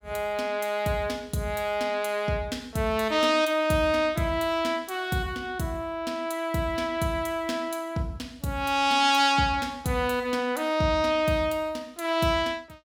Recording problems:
none

